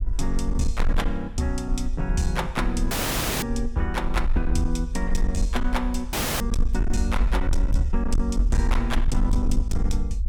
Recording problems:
distortion; hard clipping, signal-to-distortion ratio 11 dB
low-frequency rumble; below 52 Hz, SNR 0 dB
dropout; at 3 s for 0.5 s and at 6 s

